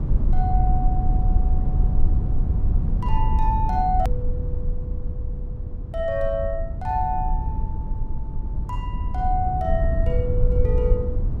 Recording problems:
rumble; below 76 Hz, SNR -3 dB
edit click; at 4 s

